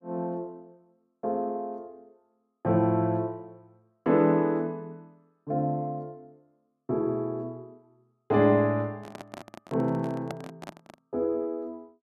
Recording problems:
microphone handling noise; from 9 to 11 s; peak -5 dB vs average level

